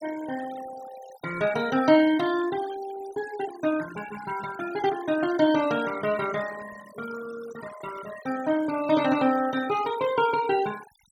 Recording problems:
noise reduction artefacts; signal-to-artefact ratio 16 dB

